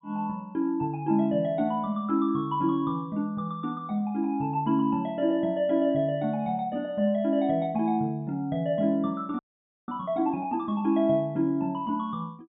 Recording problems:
treble missing; nothing above 4 kHz
frozen audio; at 9.5 s

